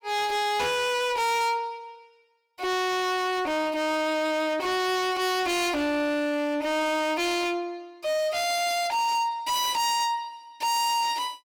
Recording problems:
distorted audio; hard clipping, signal-to-distortion ratio 6 dB

